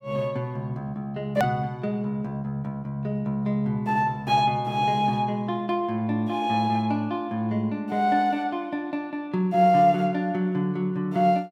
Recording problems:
edit click; at 1.5 s

